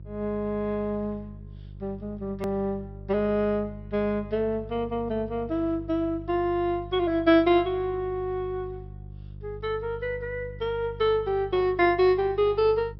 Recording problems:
treble missing; nothing above 5.6 kHz
hum; 50 Hz, harmonics up to 350 Hz, SNR 16 dB
edit click; at 2.5 s

